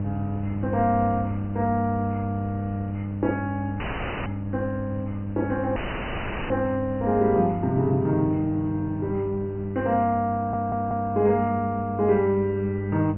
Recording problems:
low-pass filter; nothing above 3 kHz
electrical hum; 50 Hz, harmonics up to 600 Hz, SNR 5 dB
wind on the microphone; below 240 Hz, SNR 18 dB
dropout; at 4 s and at 6 s for 0.5 s
audio stuttering; at 10 s

